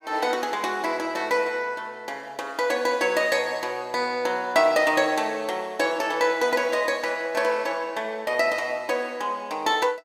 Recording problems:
none

